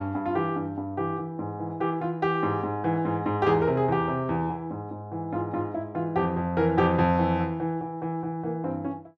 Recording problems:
none

